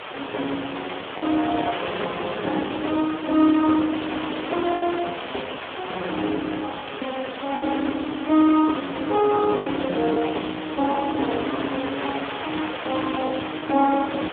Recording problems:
phone line; 220 Hz to 2.9 kHz, Speex
background hiss; SNR 9 dB
lost packets; 3% of the sound replaced, filled with the last packet

